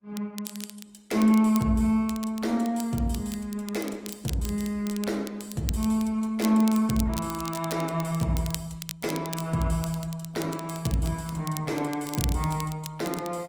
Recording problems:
codec artefacts; Opus, log-spectral distance 3 dB, nothing above 19 kHz
crackling; vinyl, SNR 13 dB

